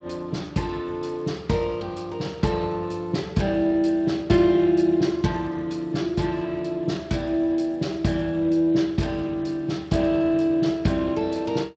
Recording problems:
lossy codec; Speex, log-spectral distance 3 dB, nothing above 7.3 kHz

